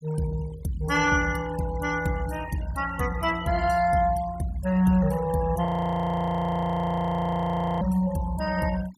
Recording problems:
noise reduction artefacts; signal-to-artefact ratio 17 dB
frozen audio; at 5.5 s for 2 s

